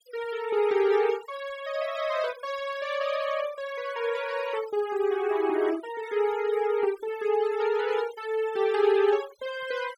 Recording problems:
noise reduction artefacts; signal-to-artefact ratio 16 dB

